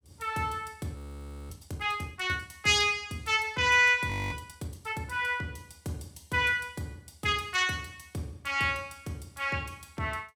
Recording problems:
frozen audio; at 1 s for 0.5 s and at 4 s

